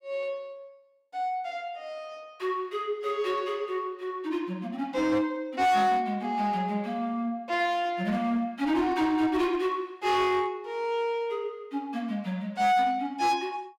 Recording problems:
distorted audio; hard clipping, uneven, signal-to-distortion ratio 11 dB

